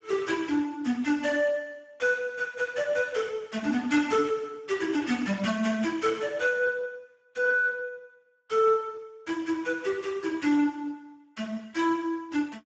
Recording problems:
codec artefacts; Speex, log-spectral distance 4 dB, nothing above 7.6 kHz

